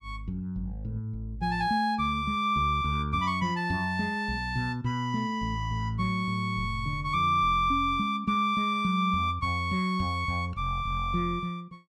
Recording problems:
none

